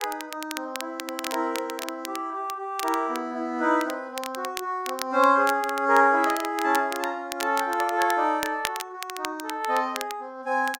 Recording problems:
crackling; vinyl, SNR 11 dB

